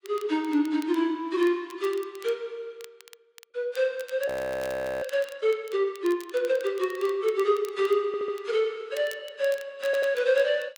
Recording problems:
lossy codec; AAC, log-spectral distance 2 dB, nothing above 19.5 kHz
crackling; vinyl, SNR 22 dB
audio freezing; at 4.5 s for 0.5 s
audio stuttering; at 8 s and at 10 s

